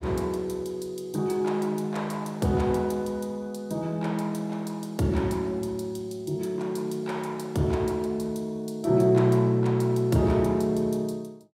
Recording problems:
none

